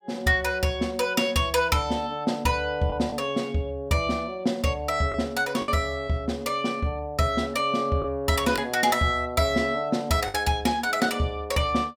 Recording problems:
packet loss; 1.9% of the sound replaced, filled with the last packet

